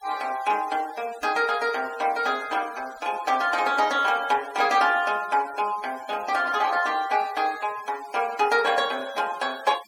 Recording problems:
denoising artefacts; signal-to-artefact ratio 19 dB

